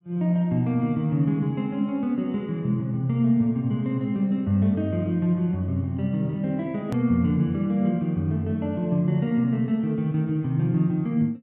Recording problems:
hard cut with a click; at 7 s

